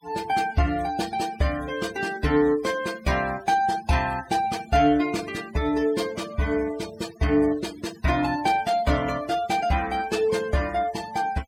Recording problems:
noise reduction artefacts; signal-to-artefact ratio 18 dB

